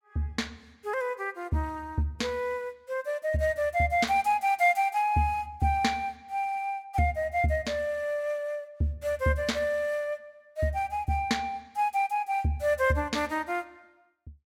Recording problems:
none

